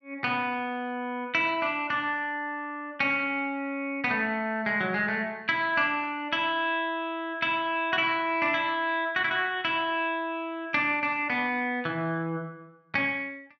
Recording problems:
treble cut off; nothing above 5.9 kHz

